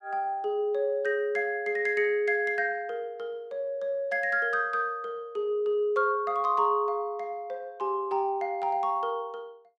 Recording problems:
none

